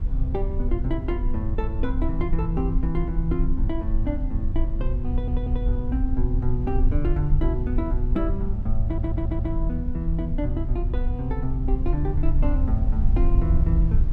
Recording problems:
rumble; below 64 Hz, SNR -3 dB
stutter; at 5 s and at 9 s

